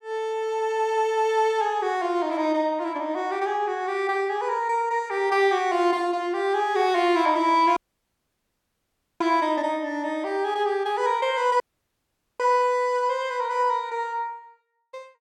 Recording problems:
audio cutting out; at 8 s for 1.5 s and at 12 s for 1 s

